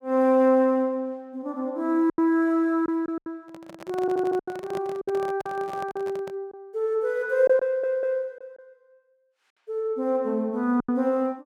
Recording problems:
lost packets; 6% of the sound replaced, filled with silence
microphone handling noise; from 3.5 to 6.5 s; peak -9 dB vs average level
audio stuttering; at 4 s and at 7.5 s

